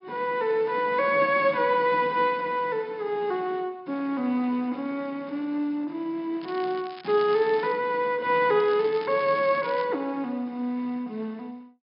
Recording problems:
treble missing; nothing above 5.5 kHz
crackle; from 6.5 to 8 s and from 8.5 to 10 s; loose cable, SNR 20 dB

